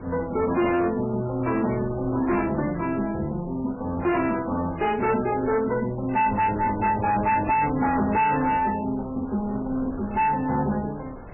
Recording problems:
lossy codec; AAC, then MP3, log-spectral distance 3 dB, nothing above 2.7 kHz
distorted audio; hard clipping, signal-to-distortion ratio 7 dB
wind on the microphone; below 740 Hz, SNR 16 dB

